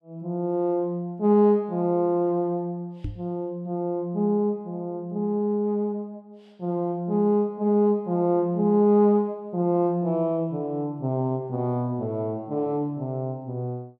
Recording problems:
knock on the microphone; at 3 s; peak -3 dB vs average level

